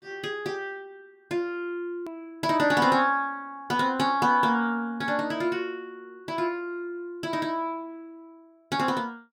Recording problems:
click at an edit; at 2 s

